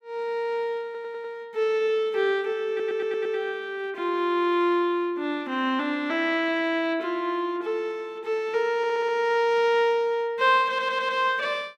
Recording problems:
audio stuttering; 4 times, first at 1 s

